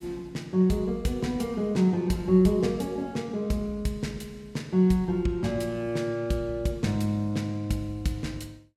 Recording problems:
none

